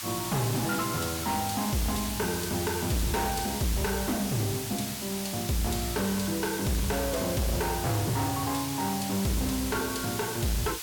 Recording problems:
distorted audio; hard clipping, signal-to-distortion ratio 6 dB
background hiss; SNR 4 dB

